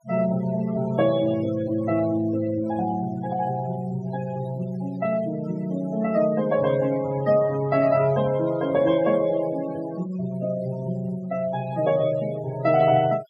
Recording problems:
denoising artefacts; signal-to-artefact ratio 18 dB

